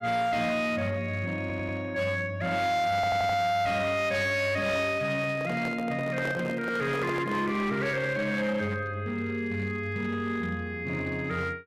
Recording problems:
distorted audio; hard clipping, signal-to-distortion ratio 11 dB
stutter; at 1.5 s and at 3 s
microphone handling noise; from 5 to 7.5 s; peak -2 dB vs average level

